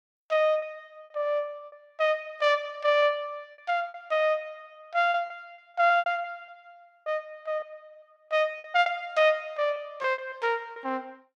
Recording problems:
packet loss; 9% of the sound replaced, filled with repeated pitch periods

